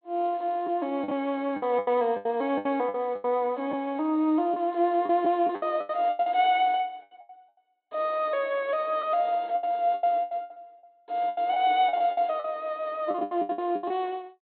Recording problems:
low-pass filter; nothing above 4.3 kHz
packet loss; 14% of the sound replaced, filled with the last packet

